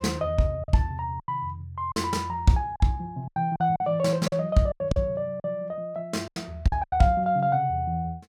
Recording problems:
lost packets; 9% of the sound replaced, filled with silence

